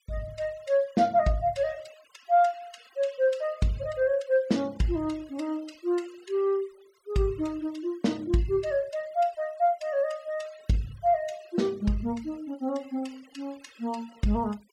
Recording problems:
denoising artefacts; signal-to-artefact ratio 24 dB

